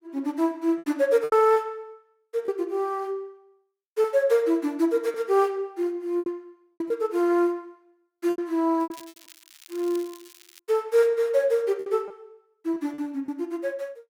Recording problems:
lost packets; 7% of the sound replaced, filled with repeated pitch periods
crackle; from 9 to 11 s; loose cable, SNR 23 dB

